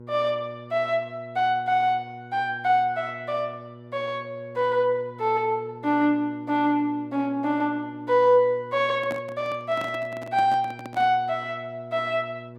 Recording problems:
hum; 60 Hz, harmonics up to 1.1 kHz, SNR 19 dB
handling noise; from 9 to 11 s; peak -6 dB vs average level

